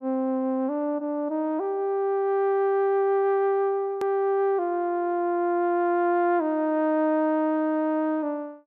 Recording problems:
edit click; at 4 s

